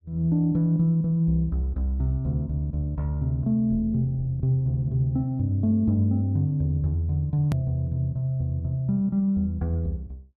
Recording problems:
click at an edit; at 7.5 s

